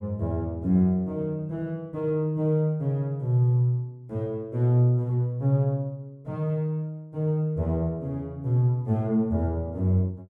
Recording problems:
none

